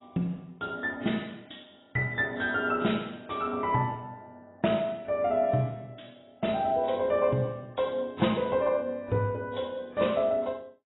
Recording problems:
lossy codec; AAC, log-spectral distance 5 dB, nothing above 3.9 kHz

